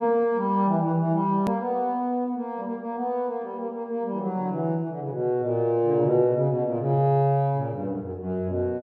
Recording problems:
click at an edit; at 1.5 s

